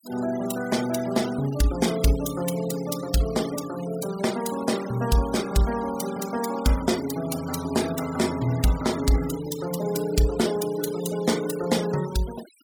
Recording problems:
denoising artefacts; signal-to-artefact ratio 14 dB

